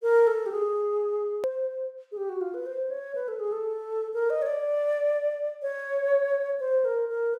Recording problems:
hard cut with a click; at 1.5 s

